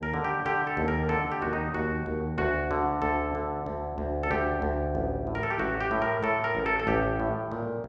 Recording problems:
none

